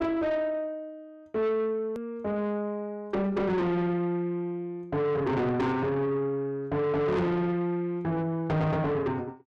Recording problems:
distorted audio; soft clipping, signal-to-distortion ratio 8 dB
edit click; at 2 s

